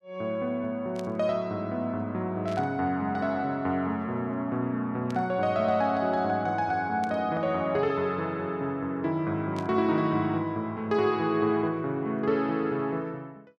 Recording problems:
static burst; 5 times, first at 1 s; peak -11 dB vs average level

